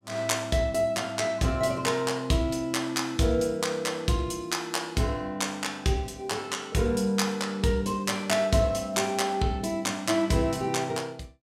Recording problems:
none

